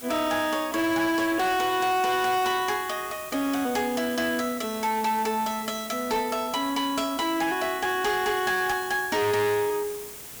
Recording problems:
distorted audio; hard clipping, signal-to-distortion ratio 11 dB
background hiss; slope -2 dB per octave, SNR 13 dB

